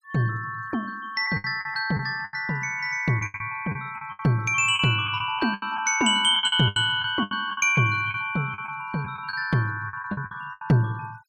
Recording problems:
noise reduction artefacts; signal-to-artefact ratio 27 dB
packet loss; 13% of the sound replaced, filled with the last packet

